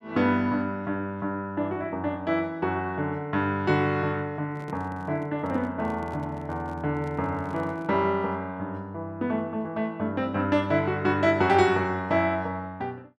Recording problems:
microphone handling noise; from 4.5 to 8 s; peak -9 dB vs average level

